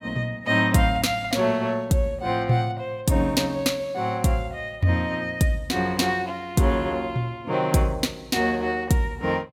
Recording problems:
none

